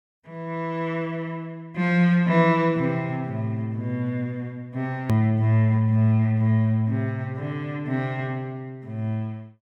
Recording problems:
edit click; at 5 s

